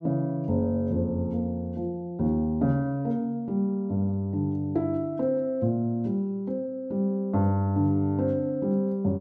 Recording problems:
none

